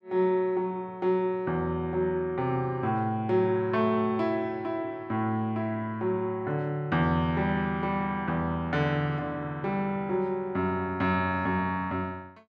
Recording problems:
none

